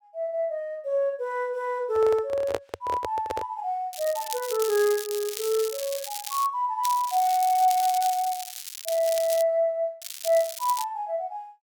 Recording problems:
handling noise; from 2 to 3.5 s; peak +1 dB vs average level
crackling; from 4 to 6.5 s, from 7 to 9.5 s and at 10 s; loose cable, SNR 9 dB

